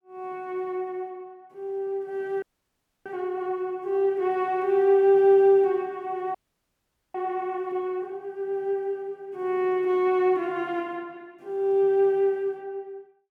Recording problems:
frozen audio; at 2.5 s for 0.5 s and at 6.5 s for 1 s

